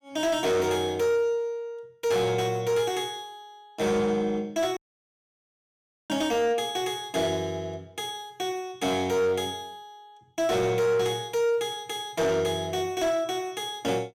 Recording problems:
distorted audio; soft clipping, signal-to-distortion ratio 12 dB
dropout; at 5 s for 1.5 s

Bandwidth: 16.5 kHz